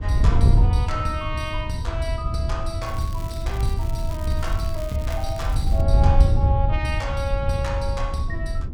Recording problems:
wind on the microphone; below 94 Hz, SNR -5 dB
crackle; from 3 to 6 s; loose cable, SNR 16 dB

